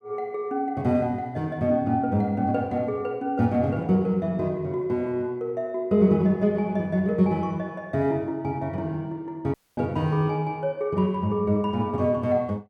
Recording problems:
audio cutting out; at 9.5 s

